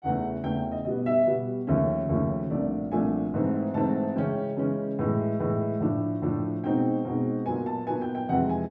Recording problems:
none

